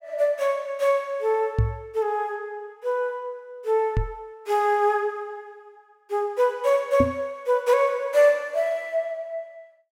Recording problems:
knock on the microphone; at 1.5 s, at 4 s and at 7 s; peak +5 dB vs average level

